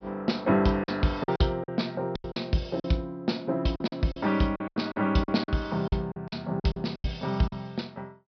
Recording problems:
treble cut off; nothing above 5.5 kHz
packet loss; 12% of the sound replaced, filled with silence

